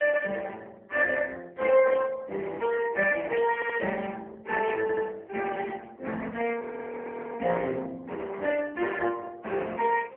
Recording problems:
phone line; 280 Hz to 3.2 kHz, AMR-NB
stutter; at 3.5 s and at 5 s
frozen audio; at 6.5 s for 0.5 s

